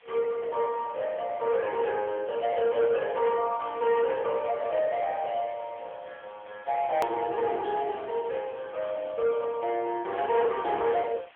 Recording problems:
telephone audio; 340 Hz to 3.5 kHz, AMR-NB
distortion; soft clipping, signal-to-distortion ratio 11 dB
hiss; SNR 27 dB
click at an edit; at 7 s

